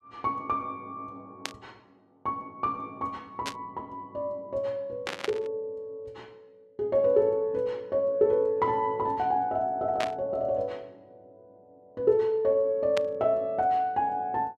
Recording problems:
burst of static; 5 times, first at 1.5 s; peak 0 dB vs average level

